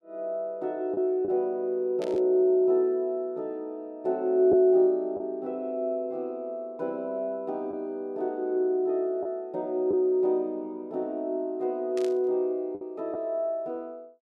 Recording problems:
lost packets; 1.7% of the sound replaced, filled with the last packet
static burst; at 2 s and at 12 s; peak -12 dB vs average level

